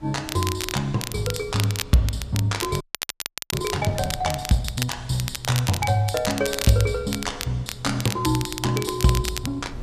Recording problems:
wind on the microphone; below 140 Hz, SNR 19 dB
crackling; vinyl, SNR 7 dB
frozen audio; at 3 s for 0.5 s

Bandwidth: 14.5 kHz